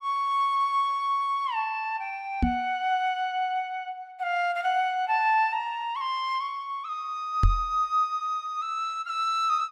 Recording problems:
microphone bump; at 2.5 s and at 7.5 s; peak +7 dB vs average level

